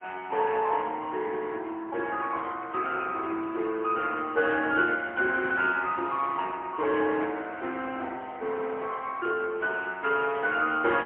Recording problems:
phone line; 280 Hz to 3.3 kHz, AMR-NB, then MP3

